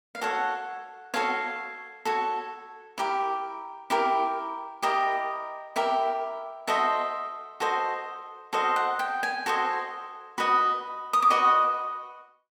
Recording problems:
none

